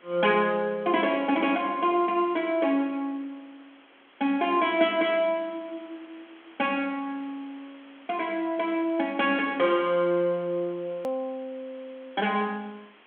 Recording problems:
telephone audio; 220 Hz to 3.5 kHz, G.726
background hiss; SNR 27 dB
click at an edit; at 11 s

